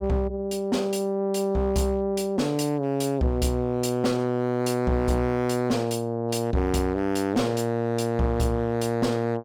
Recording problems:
distortion; hard clipping, signal-to-distortion ratio 12 dB

